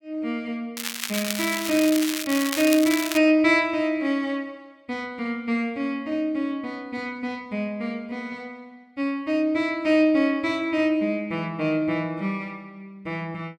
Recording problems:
crackling; from 1 to 3 s; loose cable, SNR 5 dB

